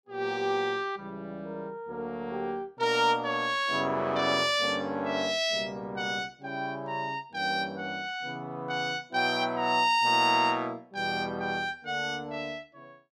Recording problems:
none

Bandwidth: 15 kHz